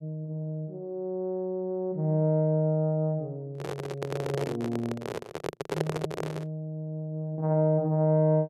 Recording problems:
microphone handling noise; from 3.5 to 6.5 s; peak +4 dB vs average level

